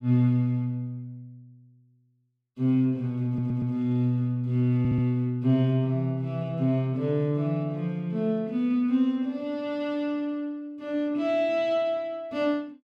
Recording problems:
stutter; at 3.5 s and at 5 s

